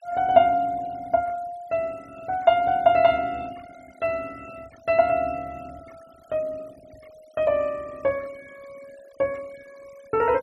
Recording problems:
noise reduction artefacts; signal-to-artefact ratio 27 dB

